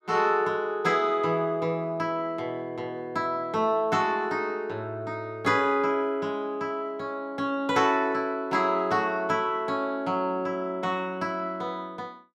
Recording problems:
none

